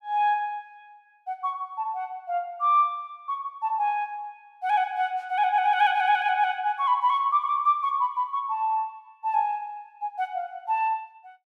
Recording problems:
none

